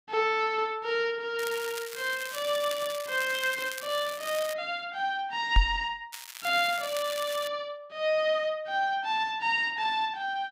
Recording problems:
crackle; from 1.5 to 4.5 s and from 6 to 7.5 s; loose cable, SNR 11 dB
microphone thump; at 5.5 s; peak +9 dB vs average level

